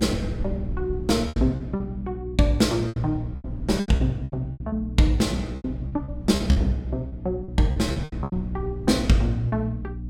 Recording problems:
mains hum; 60 Hz, harmonics up to 300 Hz, SNR 9 dB
rumble; below 98 Hz, SNR 15 dB
lost packets; 13% of the sound replaced, filled with repeated pitch periods

